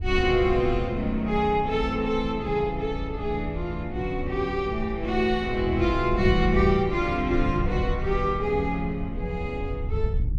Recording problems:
wind noise; below 84 Hz, SNR 7 dB

